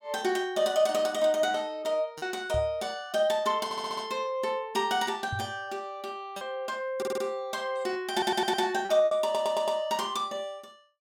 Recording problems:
packet loss; 2% of the sound replaced, filled with repeated pitch periods
microphone thump; at 2.5 s and at 5.5 s; peak -3 dB vs average level
stutter; 4 times, first at 3.5 s

